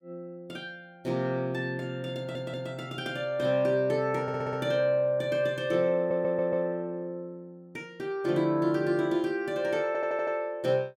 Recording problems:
stutter; 4 times, first at 2 s

